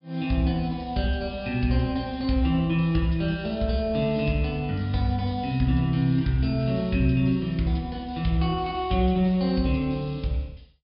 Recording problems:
treble missing; nothing above 5.5 kHz

